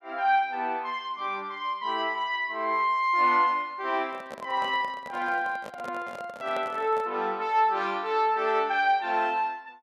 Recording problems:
microphone handling noise; from 4 to 7 s; peak -6 dB vs average level

